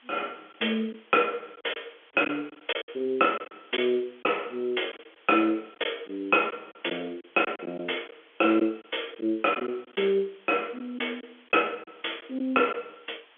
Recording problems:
telephone audio; 240 Hz to 3.4 kHz, G.711
hiss; SNR 28 dB
packet loss; 6% of the sound replaced, filled with silence

